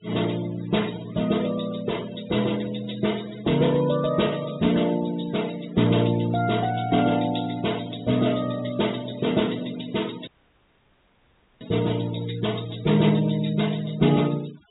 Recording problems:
treble cut off; nothing above 4 kHz
denoising artefacts; signal-to-artefact ratio 18 dB
audio cutting out; at 10 s for 1.5 s

